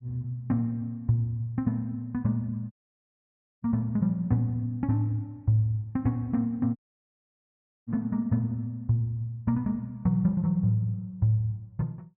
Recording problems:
audio cutting out; at 2.5 s for 1 s and at 7 s for 1 s

